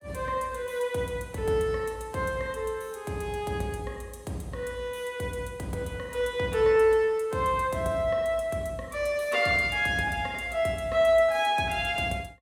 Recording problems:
none

